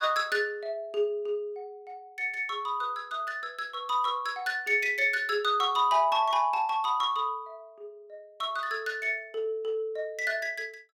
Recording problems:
none

